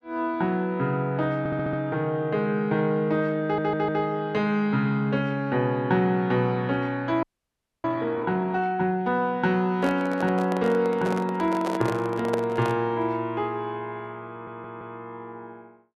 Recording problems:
stutter; at 1.5 s, at 3.5 s and at 14 s
audio freezing; at 7 s for 0.5 s
microphone handling noise; from 10 to 13 s; peak 0 dB vs average level

